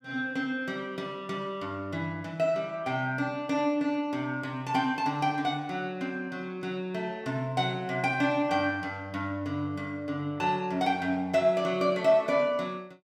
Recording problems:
none

